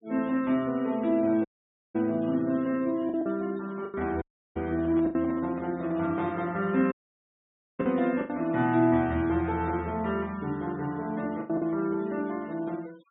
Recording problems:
treble missing; nothing above 4 kHz
denoising artefacts; signal-to-artefact ratio 25 dB
packet loss; 4% of the sound replaced, filled with the last packet
dropout; at 1.5 s, at 4 s and at 7 s for 1 s
microphone handling noise; from 4 to 6.5 s; peak -9 dB vs average level

